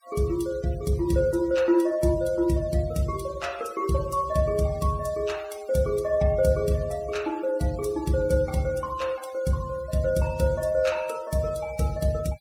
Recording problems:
denoising artefacts; signal-to-artefact ratio 21 dB

